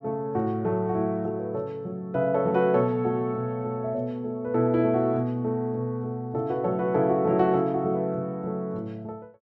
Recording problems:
none

